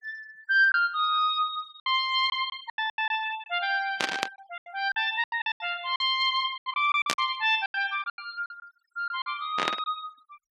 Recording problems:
denoising artefacts; signal-to-artefact ratio 25 dB
packet loss; 13% of the sound replaced, filled with silence
static burst; at 4 s, at 7 s and at 9.5 s; peak +5 dB vs average level

